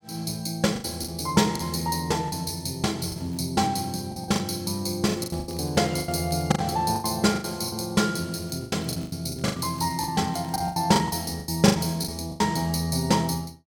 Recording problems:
lost packets; 13% of the sound replaced, filled with the last packet
crackle; 4 times, first at 3 s; loose cable, SNR 27 dB

